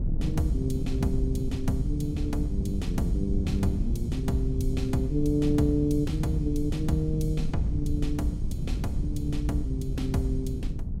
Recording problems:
wind on the microphone; below 140 Hz, SNR 1 dB

